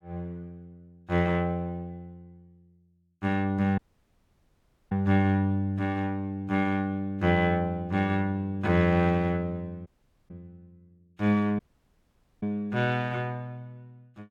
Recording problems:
audio cutting out; at 4 s for 1 s, at 10 s and at 12 s for 1 s

